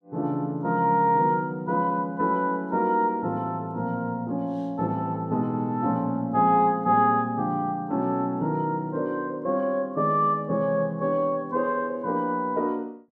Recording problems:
none

